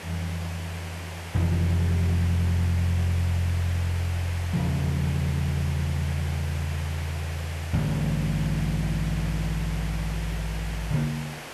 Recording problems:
hiss; SNR 11 dB

